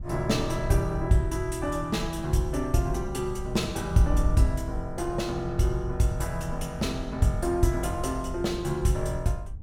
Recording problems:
wind on the microphone; below 70 Hz, SNR 10 dB

